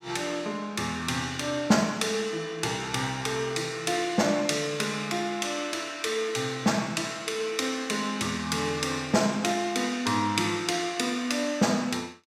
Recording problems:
none

